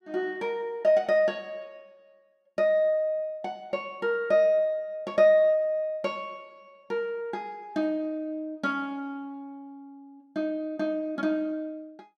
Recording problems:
none

